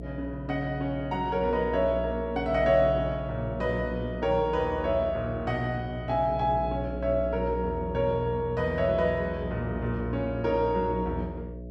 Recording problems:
hum; 60 Hz, harmonics up to 660 Hz, SNR 9 dB

